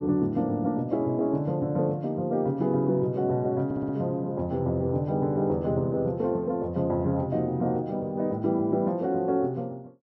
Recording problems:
audio stuttering; at 3.5 s

